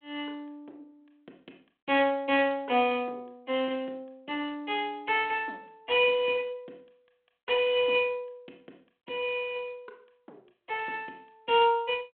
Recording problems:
telephone audio; 220 Hz to 3.4 kHz, G.726

